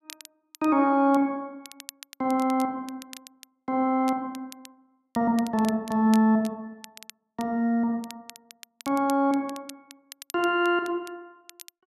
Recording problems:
crackle; vinyl, SNR 21 dB

